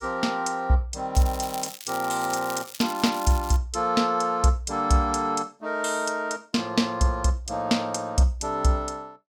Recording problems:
crackling; from 1 to 3.5 s; loose cable, SNR 13 dB

